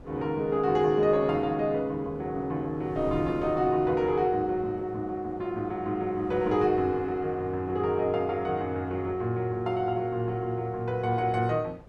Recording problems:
wind noise; below 440 Hz, SNR 20 dB

